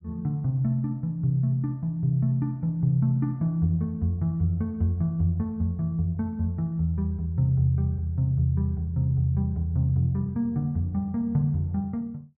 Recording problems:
none

